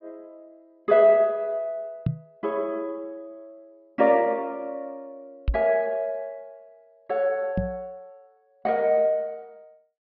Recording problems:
treble cut off; nothing above 5.5 kHz
knock on the microphone; at 2 s, at 5.5 s and at 7.5 s; peak +3 dB vs average level

